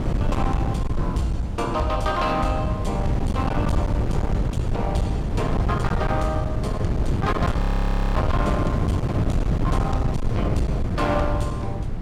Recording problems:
distortion; hard clipping, signal-to-distortion ratio 9 dB
wind noise; below 190 Hz, SNR -1 dB
frozen audio; at 7.5 s for 0.5 s

